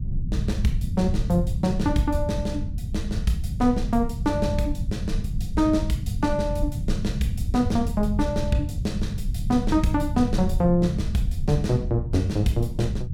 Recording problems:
rumble; below 120 Hz, SNR 3 dB

